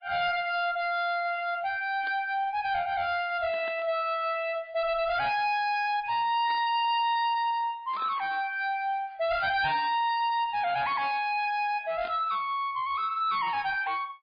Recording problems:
lossy compression; MP3, log-spectral distance 2 dB, nothing above 4.6 kHz
distortion; soft clipping, signal-to-distortion ratio 10 dB
static burst; 5 times, first at 2 s; peak -10 dB vs average level

